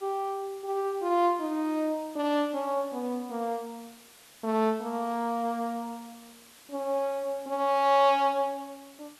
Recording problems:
hiss; slope 0 dB per octave, SNR 23 dB

